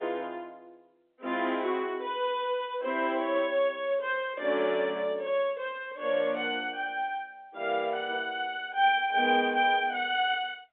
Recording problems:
phone line; 300 Hz to 3.6 kHz, G.711

